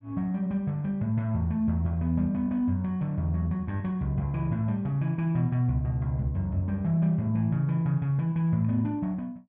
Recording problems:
low-pass filter; nothing above 5.5 kHz

